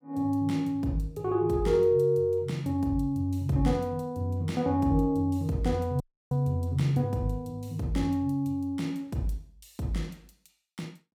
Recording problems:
dropout; at 6 s

